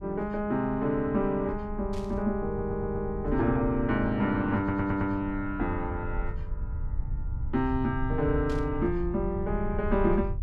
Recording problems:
rumble; below 78 Hz, SNR 8 dB
burst of static; at 2 s and at 8.5 s; peak -14 dB vs average level
audio stuttering; at 2.5 s and at 4.5 s

